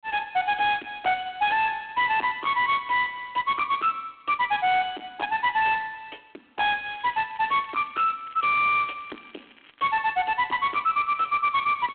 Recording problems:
phone line; 240 Hz to 3.3 kHz, G.726
distortion; soft clipping, signal-to-distortion ratio 7 dB
crackle; from 7 to 10 s; loose cable, SNR 29 dB

